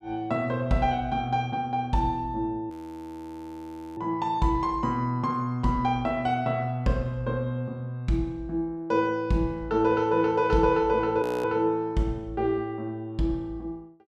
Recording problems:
frozen audio; at 2.5 s for 1.5 s and at 11 s

